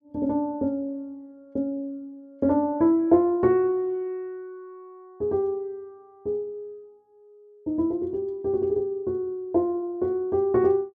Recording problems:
none

